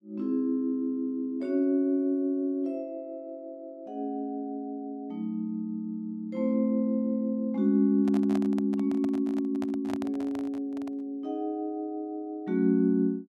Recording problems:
handling noise; from 8 to 11 s; peak -6 dB vs average level

